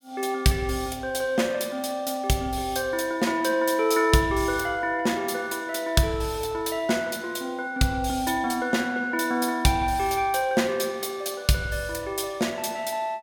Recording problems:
none

